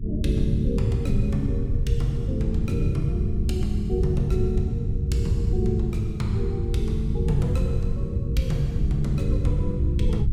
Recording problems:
mains hum; 60 Hz, harmonics up to 360 Hz, SNR 15 dB
low-frequency rumble; below 100 Hz, SNR -1 dB

